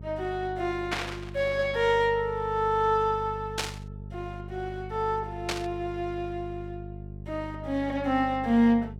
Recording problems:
hum; 50 Hz, harmonics up to 450 Hz, SNR 13 dB
static burst; at 1 s, at 3.5 s and at 5.5 s; peak +3 dB vs average level

